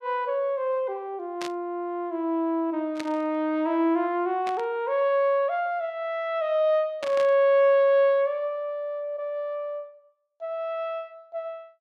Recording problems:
burst of static; 4 times, first at 1.5 s; peak -7 dB vs average level

